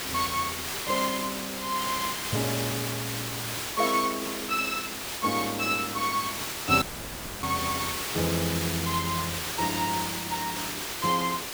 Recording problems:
hiss; slope -1 dB per octave, SNR 2 dB
audio cutting out; at 7 s for 0.5 s

